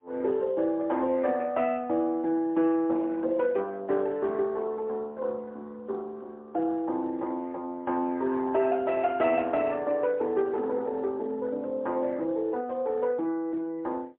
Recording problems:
phone line; 240 Hz to 3.3 kHz, AMR-NB, then MP3

